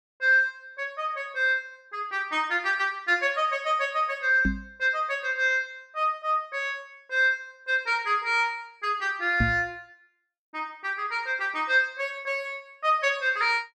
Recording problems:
microphone bump; at 4.5 s and at 9.5 s; peak +3 dB vs average level

